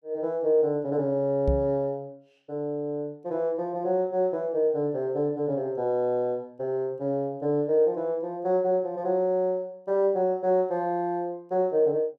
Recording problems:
microphone bump; at 1.5 s; peak +3 dB vs average level

